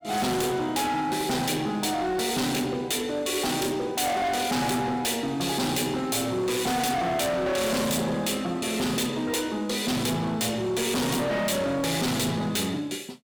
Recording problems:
distortion; hard clipping, signal-to-distortion ratio 6 dB

